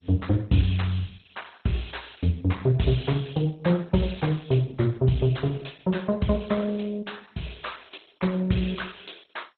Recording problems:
codec artefacts; Opus, then MP2, log-spectral distance 8 dB, nothing above 4 kHz

